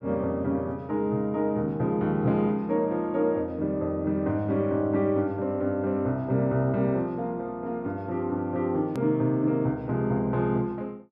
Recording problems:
hard cut with a click; at 9 s

